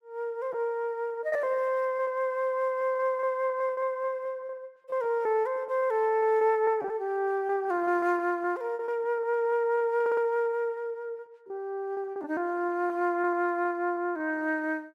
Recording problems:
packet loss; 13% of the sound replaced, filled with repeated pitch periods
audio stuttering; at 10 s

